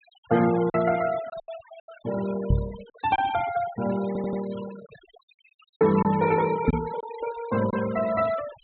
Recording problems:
treble missing; nothing above 4 kHz
noise reduction artefacts; signal-to-artefact ratio 16 dB
lost packets; 6% of the sound replaced, filled with silence
microphone bump; at 2.5 s and at 6.5 s; peak +7 dB vs average level
stutter; at 4 s

